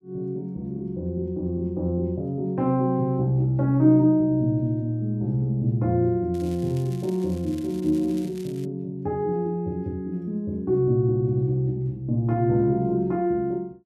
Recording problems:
crackle; from 6.5 to 8.5 s; loose cable, SNR 25 dB

